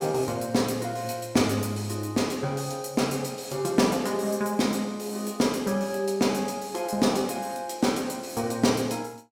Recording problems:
none

